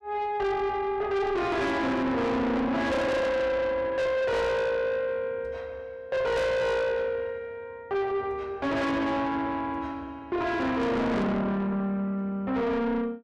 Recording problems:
distortion; soft clipping, signal-to-distortion ratio 6 dB

